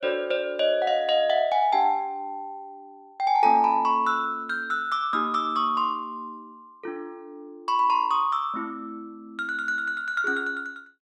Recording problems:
none

